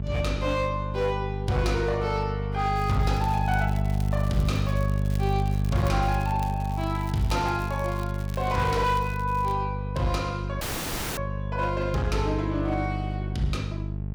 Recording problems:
distortion; hard clipping, signal-to-distortion ratio 12 dB
hum; 50 Hz, harmonics up to 450 Hz, SNR 1 dB
crackle; from 3 to 6 s and from 6 to 9.5 s; loose cable, SNR 19 dB
dropout; at 11 s for 0.5 s

